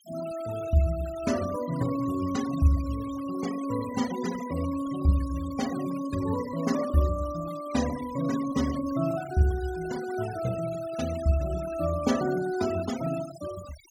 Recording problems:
noise reduction artefacts; signal-to-artefact ratio 14 dB

